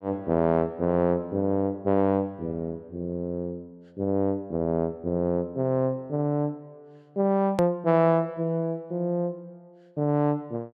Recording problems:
hard cut with a click; at 7.5 s

